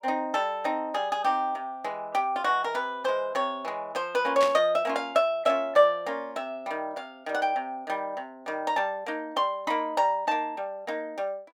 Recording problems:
static burst; at 4.5 s; peak -1 dB vs average level

